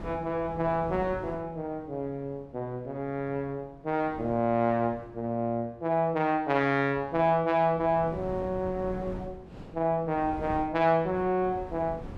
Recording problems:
wind on the microphone; below 380 Hz, SNR 16 dB

